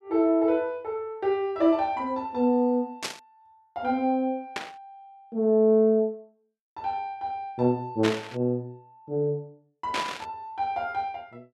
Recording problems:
burst of static; 4 times, first at 3 s; peak +1 dB vs average level

